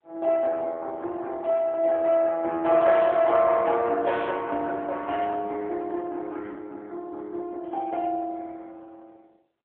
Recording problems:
telephone audio; 300 Hz to 3.4 kHz, AMR-NB

